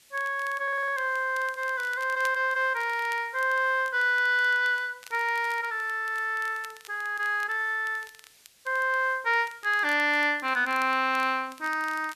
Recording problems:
background hiss; SNR 30 dB
crackling; vinyl, SNR 24 dB
audio stuttering; at 0.5 s

